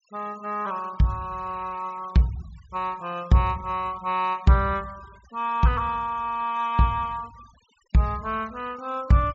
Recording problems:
treble missing; nothing above 8 kHz
denoising artefacts; signal-to-artefact ratio 25 dB

